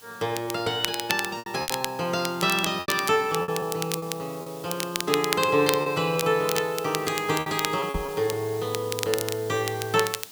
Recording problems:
hiss; slope 0 dB per octave, SNR 18 dB
crackling; vinyl, SNR 6 dB
packet loss; 7% of the sound replaced, filled with repeated pitch periods
microphone bump; at 8 s; peak -1 dB vs average level

